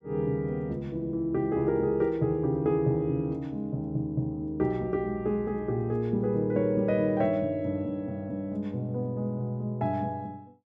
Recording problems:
none

